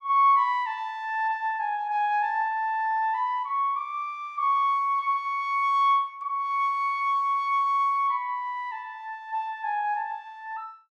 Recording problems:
none

